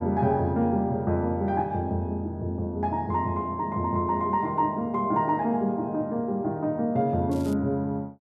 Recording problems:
crackle; at 7.5 s; loose cable, SNR 24 dB

